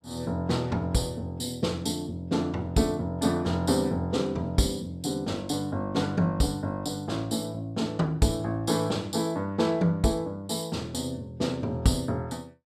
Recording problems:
none

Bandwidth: 15 kHz